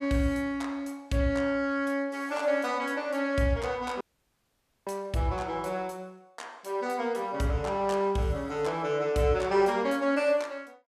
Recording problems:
dropout; at 4 s for 1 s

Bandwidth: 14.5 kHz